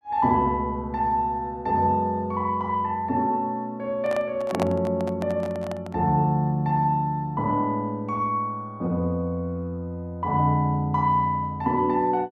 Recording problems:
handling noise; from 4 to 6 s; peak 0 dB vs average level

